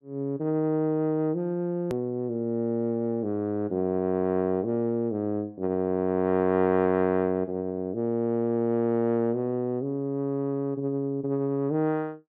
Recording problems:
hard cut with a click; at 2 s

